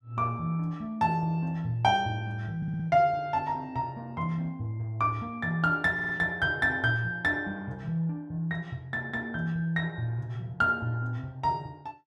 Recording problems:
audio stuttering; at 2.5 s and at 6 s

